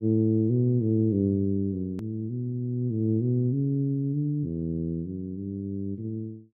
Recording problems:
edit click; at 2 s

